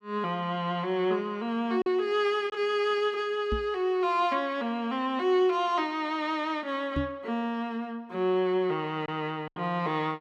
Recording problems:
lost packets; 1.6% of the sound replaced, filled with silence
microphone bump; at 3.5 s and at 7 s; peak +1 dB vs average level

